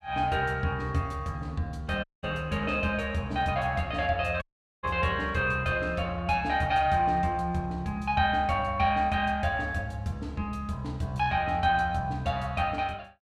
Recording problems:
dropout; at 2 s and at 4.5 s

